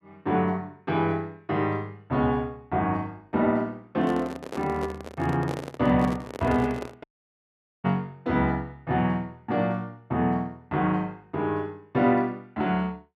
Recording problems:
microphone handling noise; from 4 to 7 s; peak -3 dB vs average level
audio cutting out; at 7 s for 1 s

